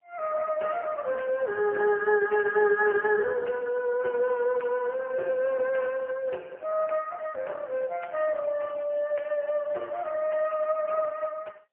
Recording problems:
telephone audio; 320 Hz to 2.9 kHz, AMR-NB, then MP3

